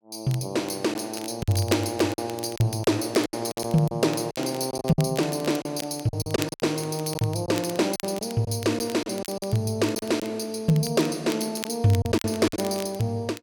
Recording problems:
crackling; vinyl, SNR 16 dB
lost packets; 10% of the sound replaced, filled with silence

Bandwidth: 18 kHz